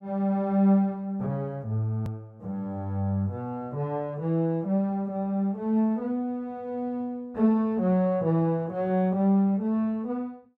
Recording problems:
edit click; at 2 s

